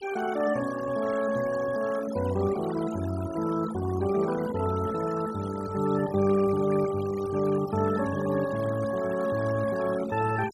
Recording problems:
denoising artefacts; signal-to-artefact ratio 14 dB

